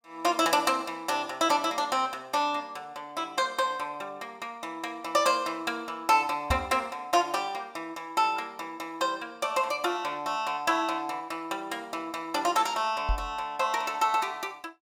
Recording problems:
microphone bump; at 6.5 s and at 13 s; peak +3 dB vs average level

